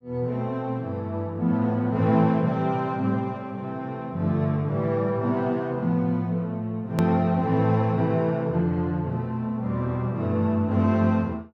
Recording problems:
edit click; at 7 s

